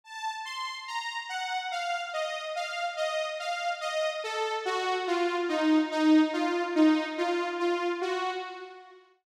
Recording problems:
none

